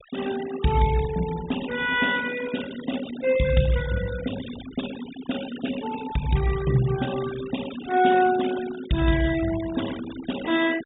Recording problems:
treble cut off; nothing above 4 kHz
noise reduction artefacts; signal-to-artefact ratio 13 dB

